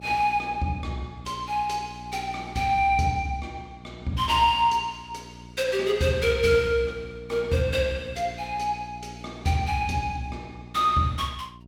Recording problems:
mains hum; 60 Hz, harmonics up to 720 Hz, SNR 19 dB

